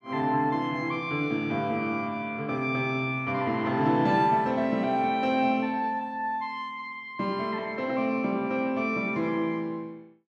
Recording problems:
none

